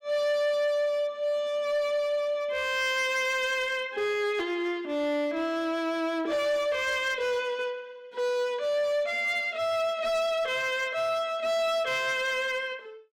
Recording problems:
distortion; hard clipping, signal-to-distortion ratio 11 dB

